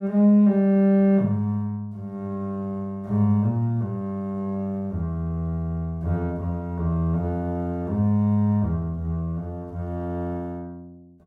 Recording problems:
none

